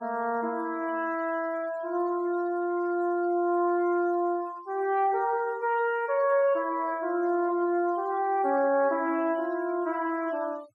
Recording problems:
denoising artefacts; signal-to-artefact ratio 26 dB

